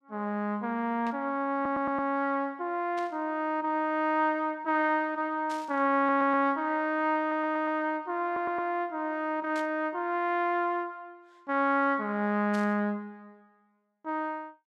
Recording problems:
burst of static; 5 times, first at 1 s; peak -12 dB vs average level
audio stuttering; 4 times, first at 1.5 s

